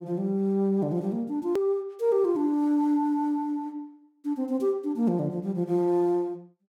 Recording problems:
hard cut with a click; at 1.5 s

